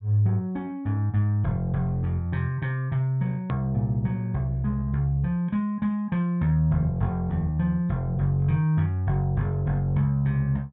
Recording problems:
treble missing; nothing above 4 kHz
click at an edit; at 3.5 s

